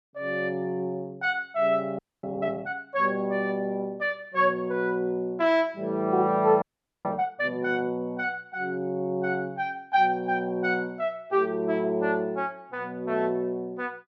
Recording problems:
audio freezing; at 2 s and at 6.5 s

